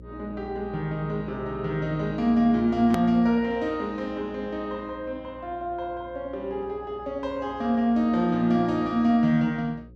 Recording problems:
electrical hum; 60 Hz, harmonics up to 540 Hz, SNR 21 dB
hard cut with a click; at 3 s

